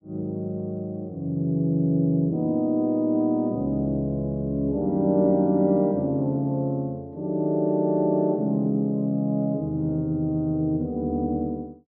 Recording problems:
none

